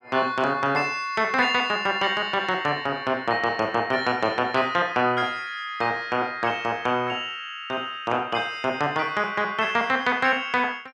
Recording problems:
none

